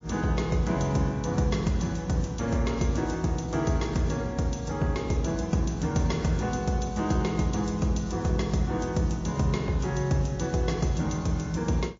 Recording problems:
lossy codec; MP3, log-spectral distance 4 dB, nothing above 6.2 kHz

